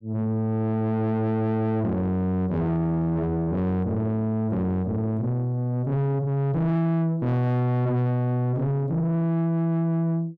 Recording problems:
distortion; soft clipping, signal-to-distortion ratio 7 dB

